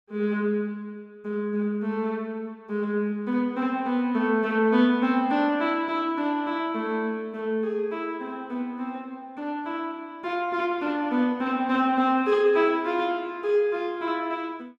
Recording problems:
none

